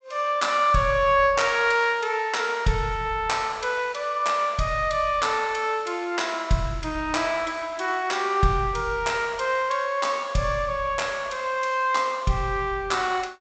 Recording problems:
low-pass filter; nothing above 8 kHz

